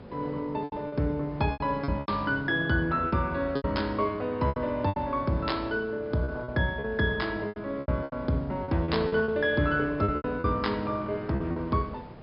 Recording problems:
treble cut off; nothing above 5.5 kHz
background hiss; slope -9 dB per octave, SNR 17 dB
packet loss; 11% of the sound replaced, filled with repeated pitch periods

